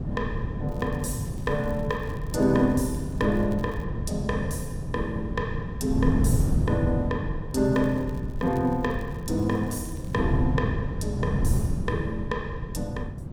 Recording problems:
wind on the microphone; below 170 Hz, SNR 2 dB
crackling; from 0.5 to 4 s and from 7.5 to 10 s; loose cable, SNR 27 dB

